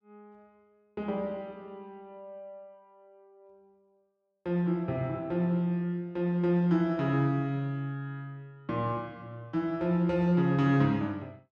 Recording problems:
none

